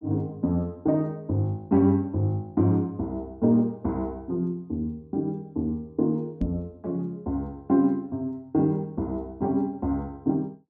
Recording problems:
microphone bump; at 6.5 s; peak 0 dB vs average level

